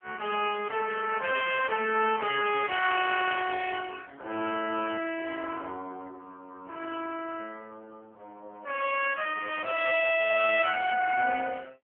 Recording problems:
telephone audio; 280 Hz to 3.3 kHz, AMR-NB

